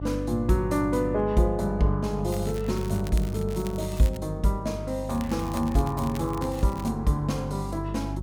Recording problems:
hum; 50 Hz, harmonics up to 550 Hz, SNR 8 dB
crackling; from 2.5 to 4 s and from 5 to 7 s; loose cable, SNR 19 dB

